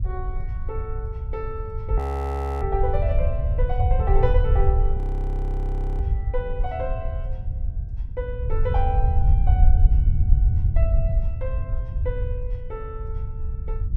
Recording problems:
wind on the microphone; below 78 Hz, SNR -7 dB
audio freezing; at 2 s for 0.5 s and at 5 s for 1 s

